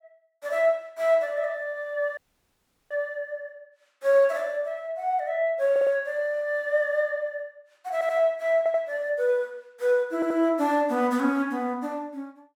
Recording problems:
dropout; at 2 s for 0.5 s
stutter; 4 times, first at 5.5 s

